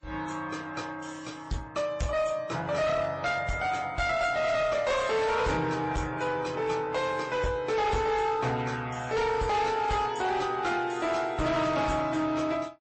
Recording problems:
codec artefacts; MP3, then MP3, log-spectral distance 3 dB, nothing above 8.2 kHz
distorted audio; hard clipping, signal-to-distortion ratio 10 dB

